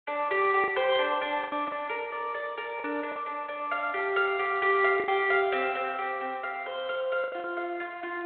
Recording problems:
telephone audio; 300 Hz to 3.9 kHz, G.726
packet loss; 5% of the sound replaced, filled with the last packet

